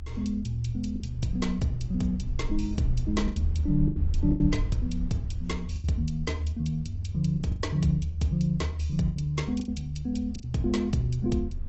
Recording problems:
lossy compression; AAC, log-spectral distance 2 dB, nothing above 7.8 kHz
rumble; below 74 Hz, SNR 7 dB
packet loss; 6% of the sound replaced, filled with the last packet

